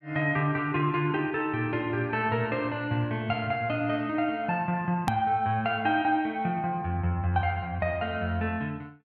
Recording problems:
hard cut with a click; at 5 s

